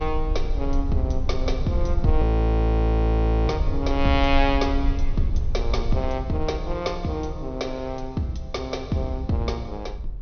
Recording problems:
treble cut off; nothing above 6.3 kHz
low-frequency rumble; below 70 Hz, SNR 1 dB
frozen audio; at 2 s for 1.5 s

